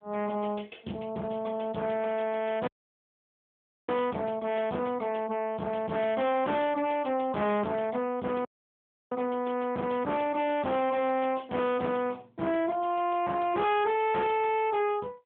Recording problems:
phone line; 880 Hz to 3.4 kHz, AMR-NB
distortion; hard clipping, signal-to-distortion ratio 8 dB
dropout; at 2.5 s for 1 s and at 8.5 s for 0.5 s

